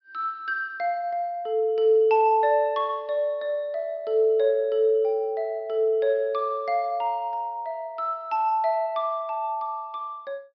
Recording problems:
low-pass filter; nothing above 5.5 kHz

